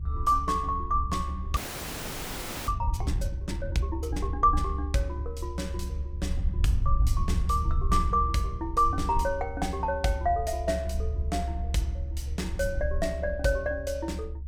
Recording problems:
low-frequency rumble; below 72 Hz, SNR 3 dB
audio freezing; at 1.5 s for 1 s

